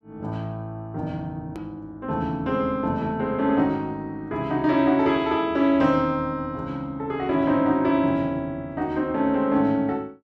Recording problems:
edit click; at 1.5 s

